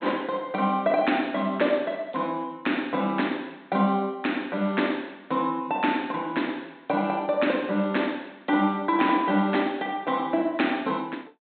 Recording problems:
treble cut off; nothing above 4 kHz

